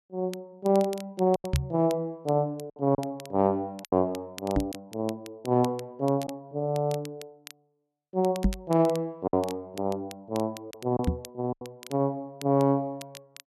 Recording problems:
crackle; vinyl, SNR 19 dB
packet loss; 4% of the sound replaced, filled with silence
microphone bump; 4 times, first at 1.5 s; peak +8 dB vs average level

